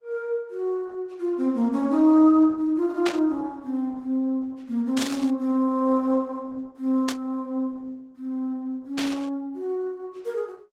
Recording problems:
codec artefacts; Opus, log-spectral distance 2 dB, nothing above 18.9 kHz
static burst; 4 times, first at 3 s; peak -1 dB vs average level

